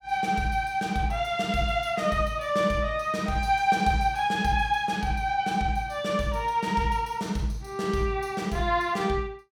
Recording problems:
none

